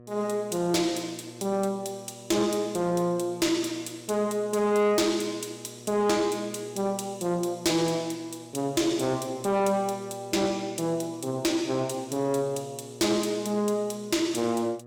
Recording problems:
distortion; soft clipping, signal-to-distortion ratio 11 dB
hum; 60 Hz, harmonics up to 1.3 kHz, SNR 20 dB

